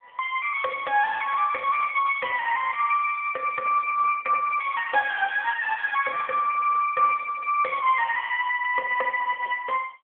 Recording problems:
phone line; 320 Hz to 2.9 kHz, AMR-NB

